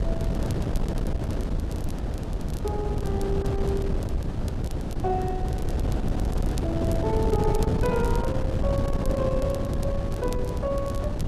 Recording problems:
wind on the microphone; below 220 Hz, SNR -2 dB
crackle; vinyl, SNR 18 dB

